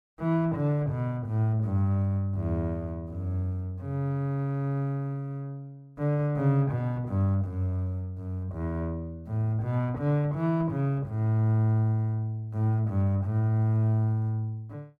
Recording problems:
none

